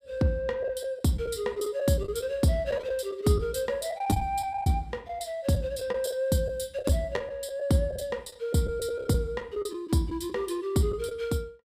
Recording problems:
packet loss; 7% of the sound replaced, filled with the last packet

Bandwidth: 15.5 kHz